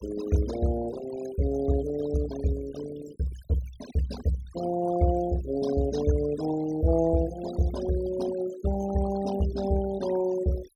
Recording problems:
denoising artefacts; signal-to-artefact ratio 14 dB

